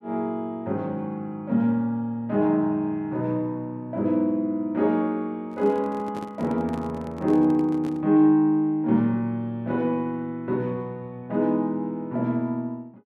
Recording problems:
handling noise; from 5.5 to 8 s; peak -8 dB vs average level

